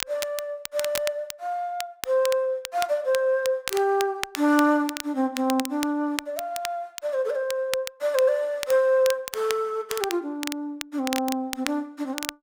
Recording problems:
crackling; vinyl, SNR 10 dB

